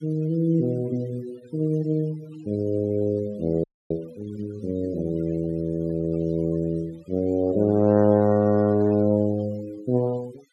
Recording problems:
noise reduction artefacts; signal-to-artefact ratio 23 dB
audio freezing; at 3.5 s

